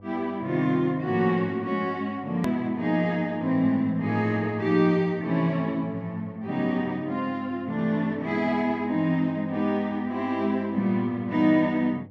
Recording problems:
hum; 50 Hz, harmonics up to 800 Hz, SNR 24 dB
edit click; at 2.5 s

